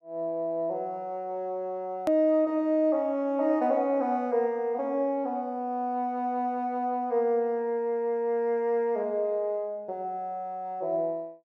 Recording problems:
edit click; at 2 s

